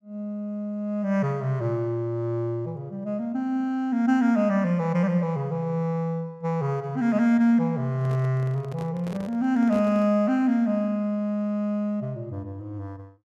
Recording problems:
microphone handling noise; from 8 to 10 s; peak -10 dB vs average level

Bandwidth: 14 kHz